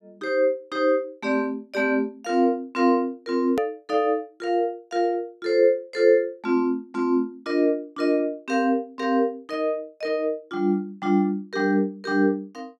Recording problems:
edit click; at 3.5 s

